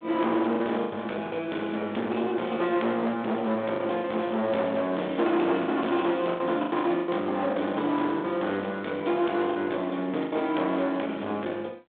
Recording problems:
telephone audio; 260 Hz to 3.6 kHz, G.726
distorted audio; hard clipping, uneven, signal-to-distortion ratio 7 dB
packet loss; 6% of the sound replaced, filled with the last packet

